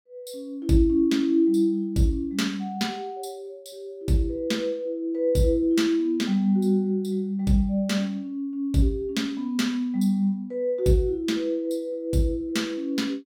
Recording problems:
none

